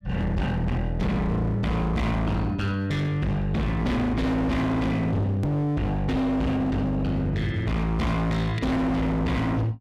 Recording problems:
distortion; hard clipping, signal-to-distortion ratio 6 dB
hard cut with a click; at 5.5 s

